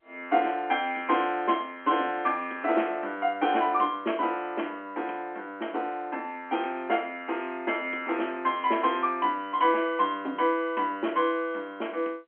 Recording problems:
phone line; 240 Hz to 3.3 kHz, G.711

